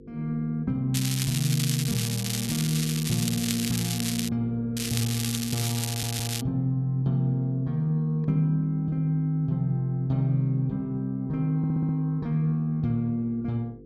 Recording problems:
hum; 50 Hz, harmonics up to 500 Hz, SNR 20 dB
crackle; from 1 to 4.5 s and from 5 to 6.5 s; loose cable, SNR 4 dB
stutter; at 6 s and at 12 s

